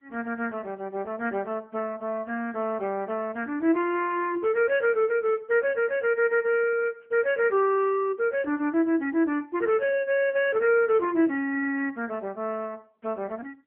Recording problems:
telephone audio; 260 Hz to 3.1 kHz, AMR-NB

